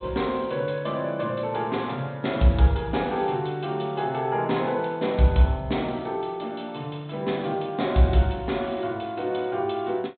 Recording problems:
treble cut off; nothing above 4 kHz

